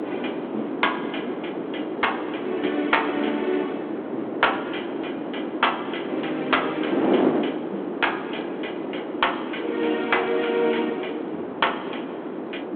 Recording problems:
telephone audio; 260 Hz to 3.5 kHz, G.726
wind noise; below 570 Hz, SNR 3 dB

